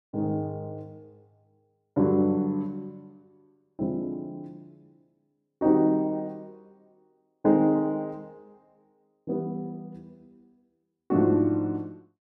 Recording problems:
none

